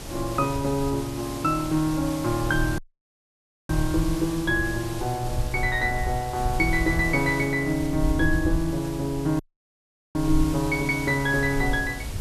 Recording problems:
background hiss; slope -3 dB per octave, SNR 13 dB
low-frequency rumble; below 78 Hz, SNR 9 dB
dropout; at 3 s for 1 s and at 9.5 s for 1 s

